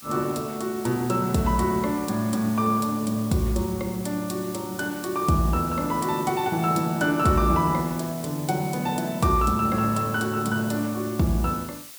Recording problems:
hiss; slope +2 dB per octave, SNR 15 dB

